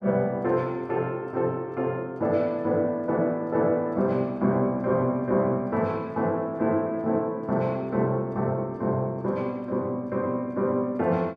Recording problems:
none

